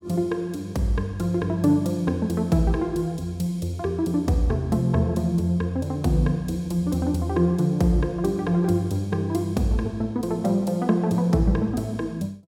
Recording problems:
none

